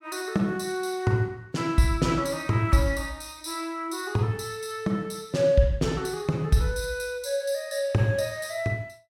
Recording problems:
none

